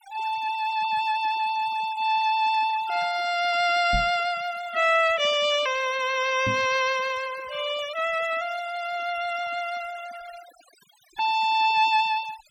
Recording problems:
noise reduction artefacts; signal-to-artefact ratio 18 dB
knock on the microphone; at 4 s and at 6.5 s; peak -3 dB vs average level

